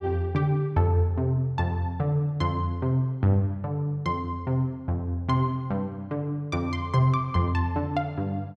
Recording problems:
none

